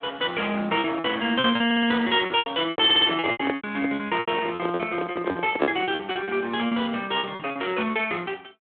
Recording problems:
phone line; 220 Hz to 3.9 kHz, Speex
lost packets; 16% of the sound replaced, filled with repeated pitch periods
audio stuttering; at 1.5 s and at 3 s
microphone handling noise; from 2.5 to 6 s; peak +5 dB vs average level

